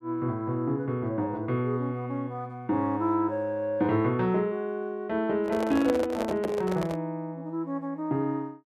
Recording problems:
microphone handling noise; from 5.5 to 7 s; peak +1 dB vs average level

